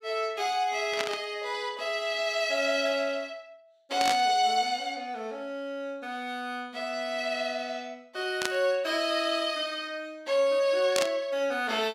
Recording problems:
static burst; 4 times, first at 1 s; peak +4 dB vs average level

